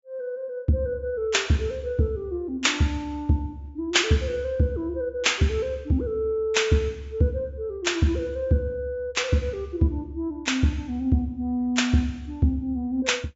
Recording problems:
treble missing; nothing above 8 kHz

